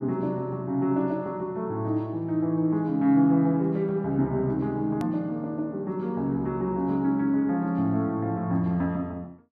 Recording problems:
hard cut with a click; at 5 s

